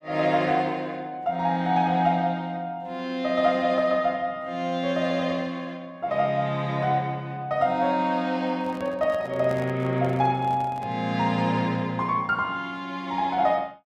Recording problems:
microphone handling noise; from 8.5 to 11 s; peak -8 dB vs average level

